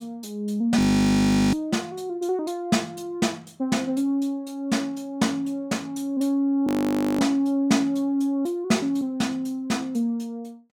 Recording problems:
frozen audio; at 1 s for 0.5 s and at 6.5 s for 0.5 s

